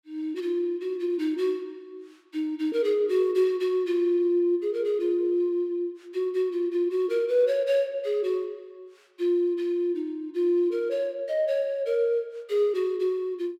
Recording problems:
none

